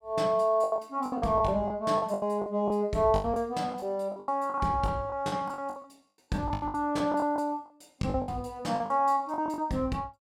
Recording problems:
lost packets; 17% of the sound replaced, filled with the last packet

